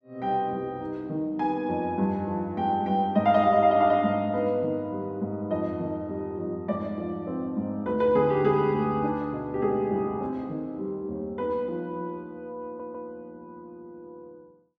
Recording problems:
audio stuttering; at 13 s

